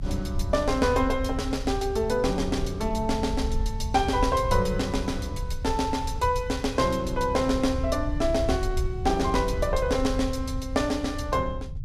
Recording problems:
rumble; below 84 Hz, SNR 7 dB

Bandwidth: 15 kHz